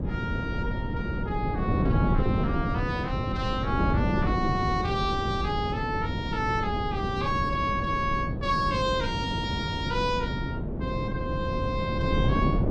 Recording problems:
wind on the microphone; below 270 Hz, SNR 0 dB

